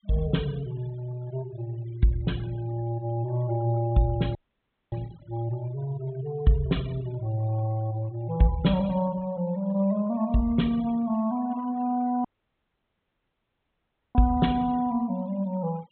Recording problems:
low-pass filter; nothing above 4 kHz
noise reduction artefacts; signal-to-artefact ratio 22 dB
dropout; at 4.5 s for 0.5 s and at 12 s for 2 s

